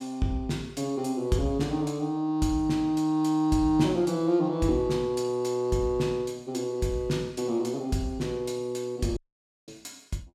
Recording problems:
audio cutting out; at 9 s for 0.5 s

